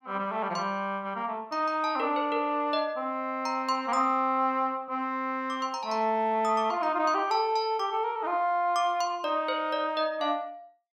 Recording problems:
none

